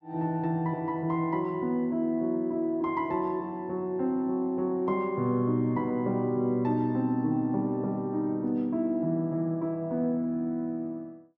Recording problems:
none

